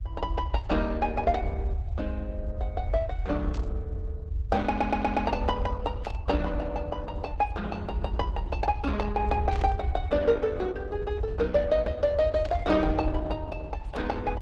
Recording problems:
codec artefacts; Opus, log-spectral distance 2 dB
low-frequency rumble; below 76 Hz, SNR 4 dB
static burst; 4 times, first at 3.5 s; peak -10 dB vs average level
stutter; at 4.5 s

